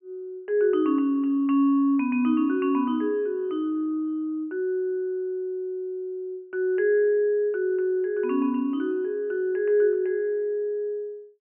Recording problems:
treble cut off; nothing above 3.1 kHz

